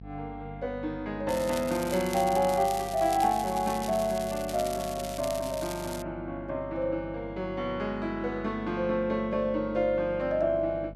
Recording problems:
electrical hum; 50 Hz, harmonics up to 500 Hz, SNR 16 dB
crackle; from 1.5 to 6 s; loose cable, SNR 12 dB

